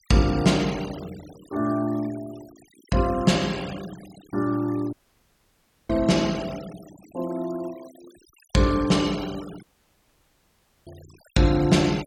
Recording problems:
denoising artefacts; signal-to-artefact ratio 19 dB
audio cutting out; at 5 s for 1 s and at 9.5 s for 1 s

